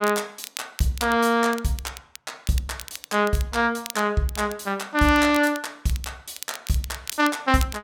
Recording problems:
crackling; vinyl, SNR 15 dB

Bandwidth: 16.5 kHz